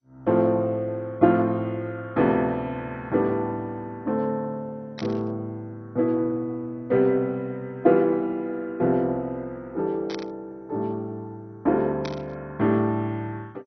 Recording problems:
codec artefacts; MP2, log-spectral distance 2 dB
static burst; at 5 s, at 10 s and at 12 s; peak -7 dB vs average level

